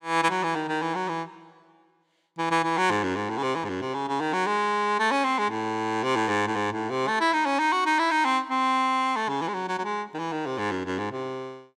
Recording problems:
none

